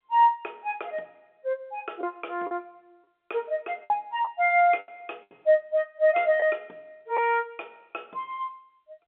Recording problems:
telephone audio; 300 Hz to 3.8 kHz, G.711
lost packets; 4% of the sound replaced, filled with the last packet

